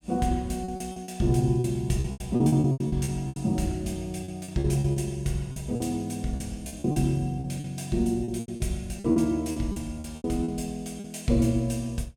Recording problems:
packet loss; 14% of the sound replaced, filled with repeated pitch periods

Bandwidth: 17.5 kHz